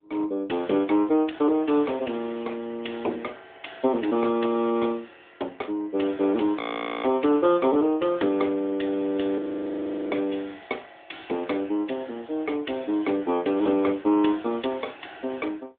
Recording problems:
phone line; 220 Hz to 3.5 kHz, AMR-NB
audio freezing; at 6.5 s and at 9.5 s for 0.5 s

